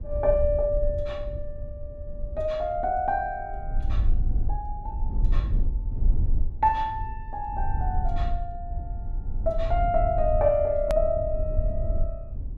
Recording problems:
rumble; below 62 Hz, SNR 4 dB
hard cut with a click; at 11 s

